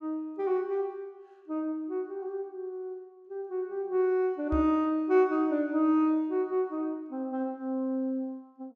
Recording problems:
microphone bump; at 4.5 s; peak -1 dB vs average level

